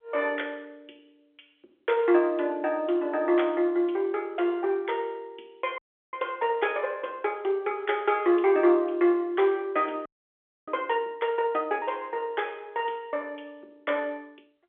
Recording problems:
telephone audio; 300 Hz to 3.5 kHz, G.711
audio freezing; at 6 s and at 10 s for 0.5 s

